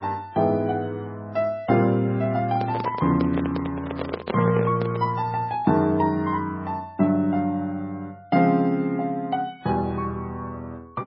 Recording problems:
codec artefacts; MP3, log-spectral distance 2 dB, nothing above 4.5 kHz
microphone handling noise; from 2.5 to 5 s; peak 0 dB vs average level

